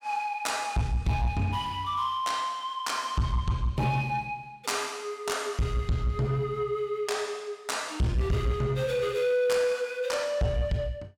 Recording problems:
distorted audio; soft clipping, signal-to-distortion ratio 10 dB

